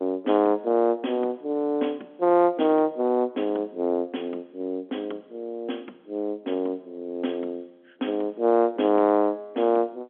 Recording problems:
telephone audio; 220 Hz to 3.5 kHz, G.711

